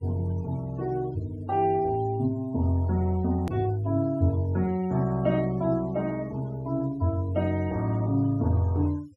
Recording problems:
noise reduction artefacts; signal-to-artefact ratio 24 dB
click at an edit; at 3.5 s

